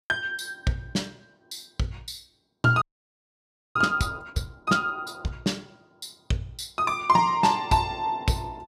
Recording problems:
audio freezing; at 3 s for 1 s

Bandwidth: 15 kHz